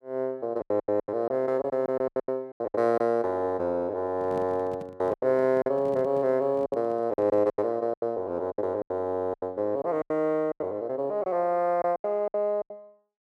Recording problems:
packet loss; 13% of the sound replaced, filled with silence
microphone handling noise; from 4 to 7.5 s; peak -9 dB vs average level

